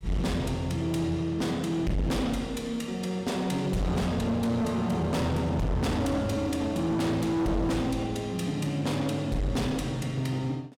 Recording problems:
distortion; hard clipping, signal-to-distortion ratio 7 dB

